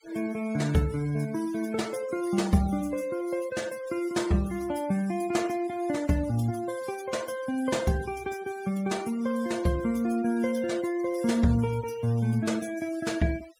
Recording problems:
denoising artefacts; signal-to-artefact ratio 19 dB

